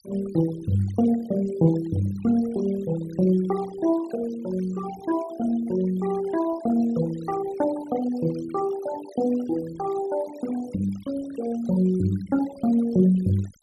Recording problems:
noise reduction artefacts; signal-to-artefact ratio 19 dB

